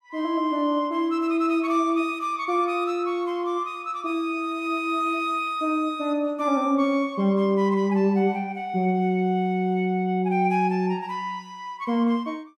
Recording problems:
none

